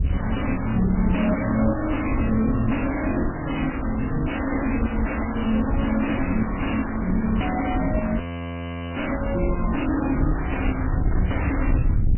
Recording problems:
lossy compression; MP3, log-spectral distance 10 dB, nothing above 3 kHz
distortion; soft clipping, signal-to-distortion ratio 5 dB
wind noise; below 100 Hz, SNR 3 dB
frozen audio; at 8 s for 1 s

